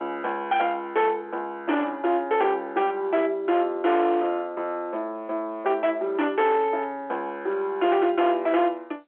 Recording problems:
telephone audio; 300 Hz to 3.6 kHz, G.711
distortion; hard clipping, signal-to-distortion ratio 12 dB

